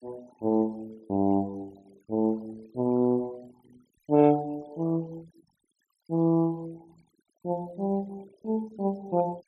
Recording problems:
denoising artefacts; signal-to-artefact ratio 26 dB

